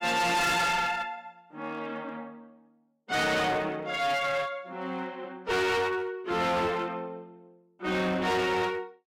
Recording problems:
distorted audio; hard clipping, uneven, signal-to-distortion ratio 6 dB

